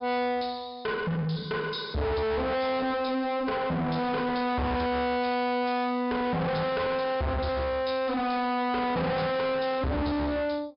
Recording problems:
treble missing; nothing above 5.5 kHz
distortion; soft clipping, signal-to-distortion ratio 6 dB

